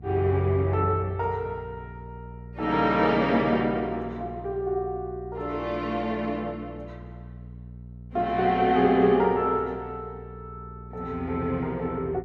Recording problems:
hum; 60 Hz, harmonics up to 480 Hz, SNR 17 dB

